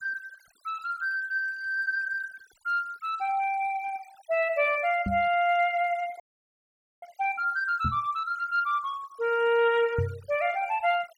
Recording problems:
denoising artefacts; signal-to-artefact ratio 25 dB
microphone thump; at 5 s, at 8 s and at 10 s; peak +1 dB vs average level
frozen audio; at 6 s for 1 s

